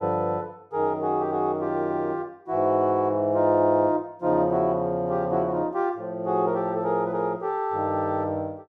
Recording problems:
none

